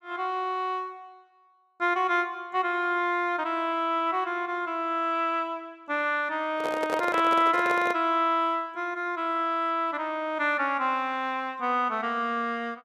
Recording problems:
handling noise; from 6.5 to 8 s; peak 0 dB vs average level

